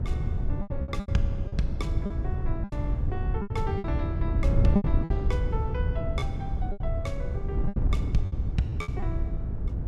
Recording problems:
wind noise; below 130 Hz, SNR -6 dB
lost packets; 10% of the sound replaced, filled with repeated pitch periods

